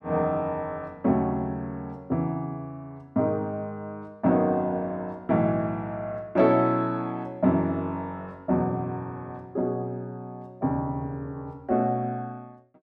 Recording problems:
none

